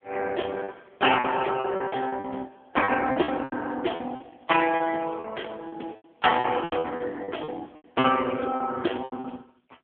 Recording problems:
telephone audio; 220 Hz to 2.9 kHz, AMR-NB
lost packets; 14% of the sound replaced, filled with repeated pitch periods

